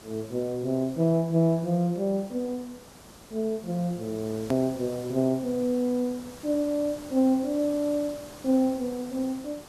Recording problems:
background hiss; SNR 19 dB
edit click; at 4.5 s

